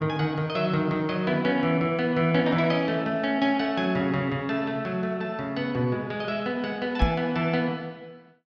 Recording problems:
microphone bump; at 7 s; peak +6 dB vs average level

